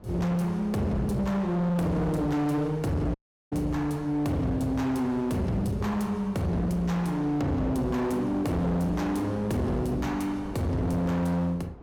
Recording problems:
distorted audio; hard clipping, signal-to-distortion ratio 8 dB
wind on the microphone; below 470 Hz, SNR 21 dB
audio cutting out; at 3 s

